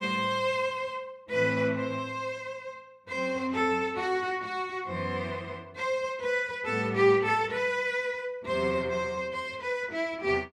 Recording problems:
none

